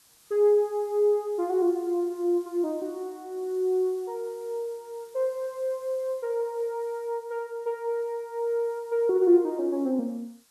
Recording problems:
hiss; slope +1 dB per octave, SNR 28 dB

